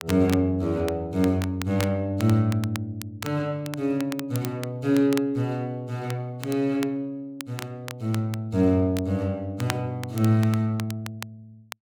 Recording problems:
crackling; vinyl, SNR 15 dB

